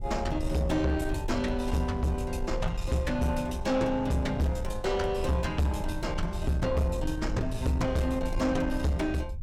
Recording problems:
distortion; soft clipping, signal-to-distortion ratio 10 dB
low-frequency rumble; below 78 Hz, SNR 8 dB

